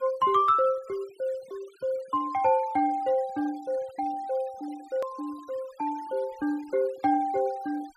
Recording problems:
denoising artefacts; signal-to-artefact ratio 24 dB
click at an edit; at 5 s

